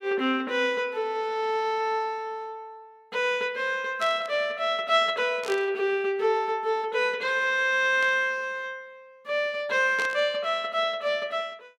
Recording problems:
burst of static; 4 times, first at 4 s; peak -7 dB vs average level

